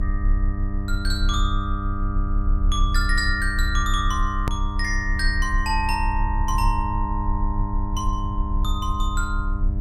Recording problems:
hum; 50 Hz, harmonics up to 1 kHz, SNR 6 dB
rumble; below 62 Hz, strongest tone 34 Hz, SNR 0 dB
click at an edit; at 4.5 s

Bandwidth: 15 kHz